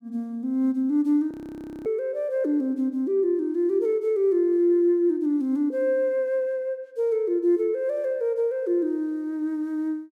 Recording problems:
audio freezing; at 1.5 s for 0.5 s

